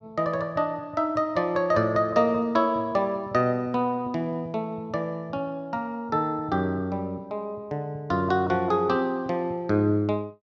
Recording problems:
none

